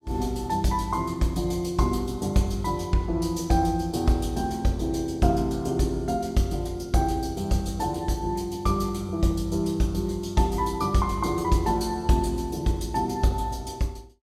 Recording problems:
none

